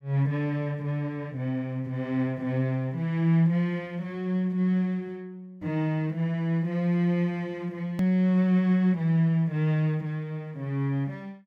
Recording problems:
edit click; at 8 s

